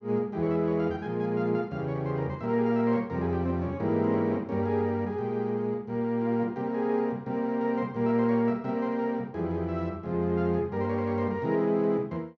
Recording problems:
none

